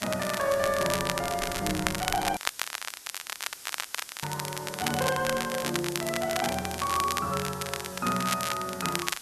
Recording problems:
hiss; slope +1 dB per octave, SNR 13 dB
wind on the microphone; below 280 Hz, SNR 18 dB
crackling; vinyl, SNR 3 dB
dropout; at 2.5 s for 2 s

